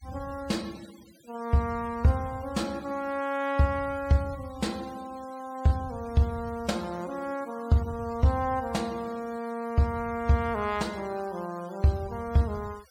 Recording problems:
noise reduction artefacts; signal-to-artefact ratio 22 dB

